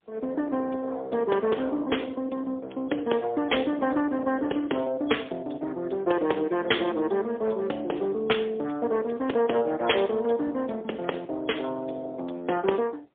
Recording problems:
telephone audio; 320 Hz to 3.4 kHz, AMR-NB, then MP3

